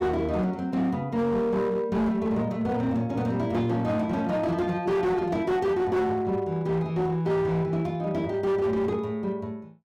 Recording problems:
distortion; hard clipping, signal-to-distortion ratio 11 dB

